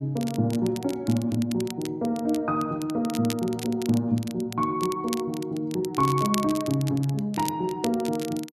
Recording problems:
crackle; vinyl, SNR 14 dB

